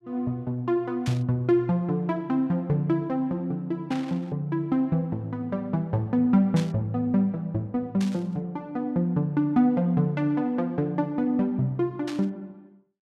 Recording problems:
static burst; 5 times, first at 1 s; peak -7 dB vs average level

